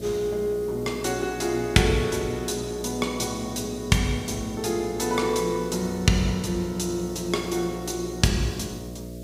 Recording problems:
hum; 60 Hz, harmonics up to 660 Hz, SNR 12 dB
background hiss; slope +4 dB per octave, SNR 25 dB

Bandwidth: 15.5 kHz